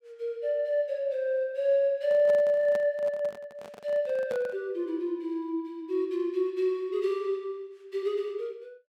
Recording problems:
microphone handling noise; from 2 to 4.5 s; peak -8 dB vs average level

